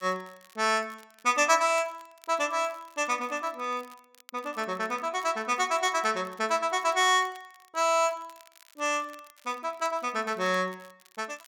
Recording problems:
crackling; vinyl, SNR 28 dB

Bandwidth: 17 kHz